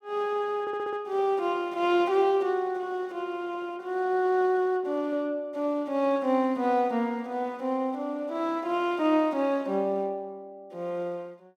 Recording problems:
stutter; at 0.5 s

